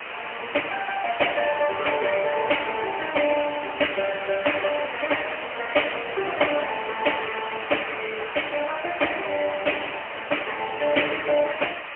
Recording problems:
telephone audio; 340 Hz to 3.1 kHz, AMR-NB, then MP3
hiss; SNR 8 dB

